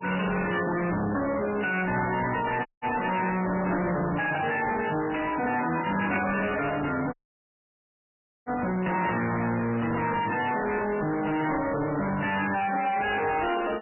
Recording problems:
lossy codec; MP3, then MP3, log-spectral distance 9 dB, nothing above 2.9 kHz
distorted audio; soft clipping, signal-to-distortion ratio 5 dB
dropout; at 2.5 s and at 7 s for 1.5 s
static burst; 4 times, first at 3.5 s; peak 0 dB vs average level

